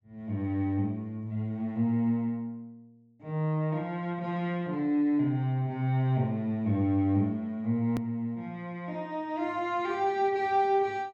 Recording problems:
treble cut off; nothing above 8 kHz
hard cut with a click; at 8 s

